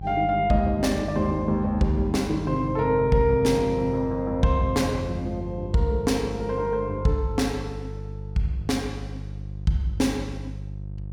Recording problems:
electrical hum; 50 Hz, harmonics up to 400 Hz, SNR 11 dB

